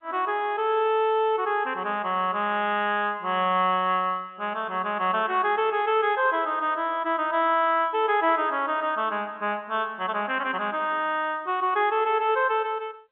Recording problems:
telephone audio; 220 Hz to 3.6 kHz, G.711

